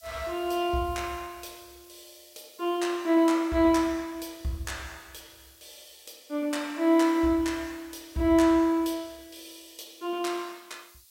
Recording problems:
hiss; SNR 27 dB

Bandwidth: 16 kHz